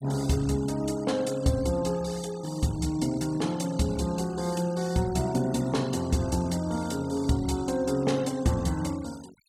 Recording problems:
denoising artefacts; signal-to-artefact ratio 20 dB

